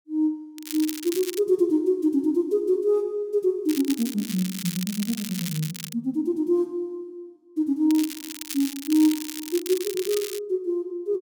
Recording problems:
crackling; at 0.5 s, from 3.5 to 6 s and from 8 to 10 s; loose cable, SNR 9 dB

